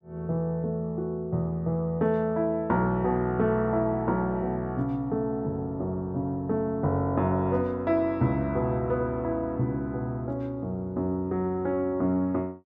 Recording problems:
none

